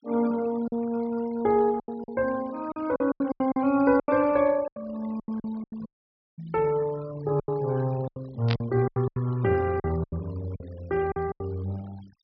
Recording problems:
treble cut off; nothing above 5.5 kHz
denoising artefacts; signal-to-artefact ratio 22 dB
packet loss; 12% of the sound replaced, filled with silence
audio cutting out; at 6 s for 0.5 s
static burst; at 8.5 s; peak -1 dB vs average level

